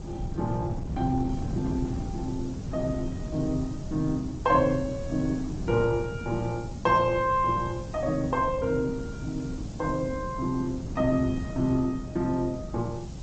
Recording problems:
lossy compression; Opus, then G.722, log-spectral distance 5 dB, nothing above 7.3 kHz
hiss; slope +4 dB per octave, SNR 27 dB
wind on the microphone; below 210 Hz, SNR 8 dB

